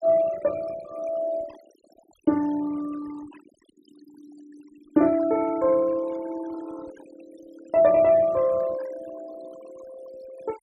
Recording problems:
noise reduction artefacts; signal-to-artefact ratio 23 dB

